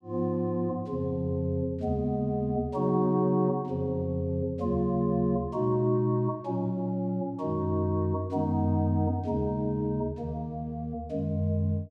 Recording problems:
none

